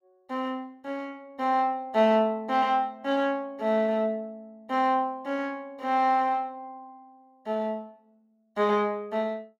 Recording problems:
none

